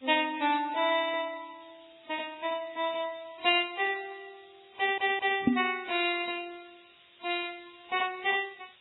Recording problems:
lossy compression; AAC, then Vorbis, log-spectral distance 15 dB, nothing above 3.9 kHz
background hiss; SNR 28 dB
stutter; at 5 s
knock on the microphone; at 5.5 s; peak +9 dB vs average level

